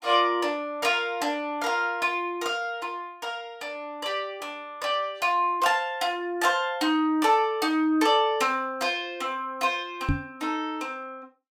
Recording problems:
microphone bump; at 10 s; peak +4 dB vs average level

